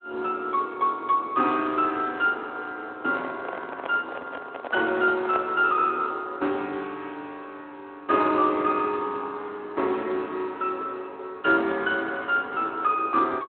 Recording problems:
phone line; 240 Hz to 4 kHz, Speex
microphone handling noise; from 3 to 5.5 s; peak -1 dB vs average level

